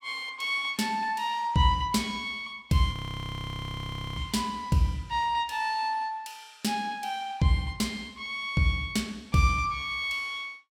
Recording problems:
frozen audio; at 3 s for 1 s

